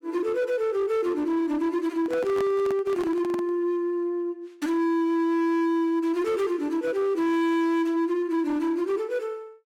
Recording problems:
distorted audio; hard clipping, signal-to-distortion ratio 11 dB
microphone handling noise; from 2 to 3.5 s; peak -6 dB vs average level

